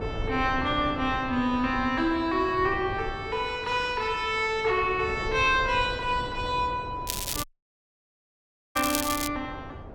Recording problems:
wind on the microphone; below 460 Hz, SNR 12 dB
crackling; from 7 to 9.5 s; loose cable, SNR 5 dB
audio cutting out; at 7.5 s for 1.5 s

